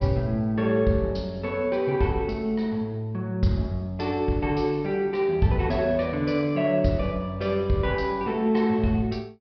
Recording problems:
treble cut off; nothing above 5.5 kHz

